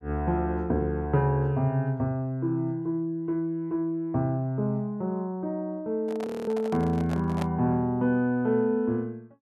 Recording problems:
handling noise; from 6 to 7.5 s; peak -4 dB vs average level
audio freezing; at 6.5 s

